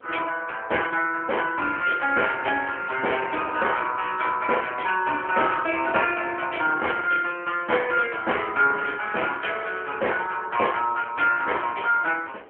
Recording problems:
phone line; 300 Hz to 3.2 kHz, AMR-NB
wind noise; below 1 kHz, SNR 20 dB

